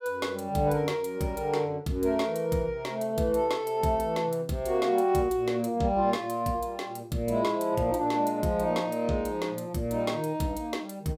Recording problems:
none

